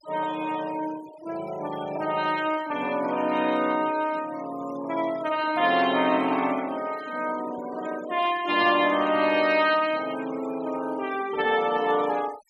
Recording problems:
noise reduction artefacts; signal-to-artefact ratio 18 dB

